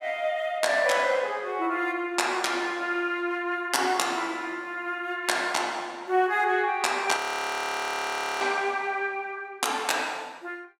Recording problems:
frozen audio; at 7 s for 1 s

